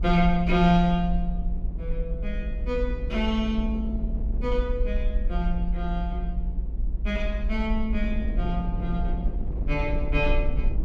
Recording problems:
rumble; below 54 Hz, SNR 3 dB
wind noise; below 270 Hz, SNR 11 dB

